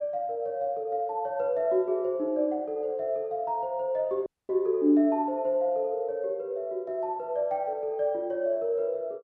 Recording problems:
audio cutting out; at 4.5 s

